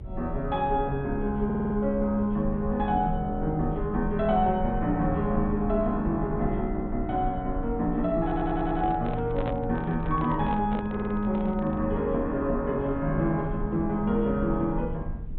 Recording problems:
low-pass filter; nothing above 4 kHz
rumble; below 68 Hz, strongest tone 30 Hz, SNR 11 dB
audio stuttering; at 1.5 s, at 8 s and at 11 s
handling noise; from 8 to 12 s; peak -2 dB vs average level

